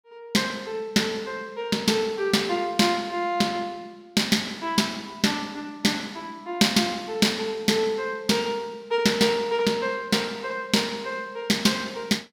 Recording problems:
none

